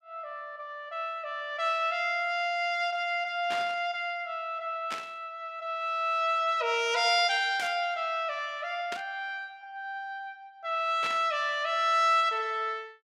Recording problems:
burst of static; 5 times, first at 3.5 s; peak -4 dB vs average level

